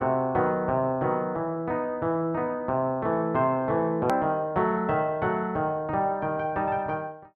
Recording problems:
click at an edit; at 4 s

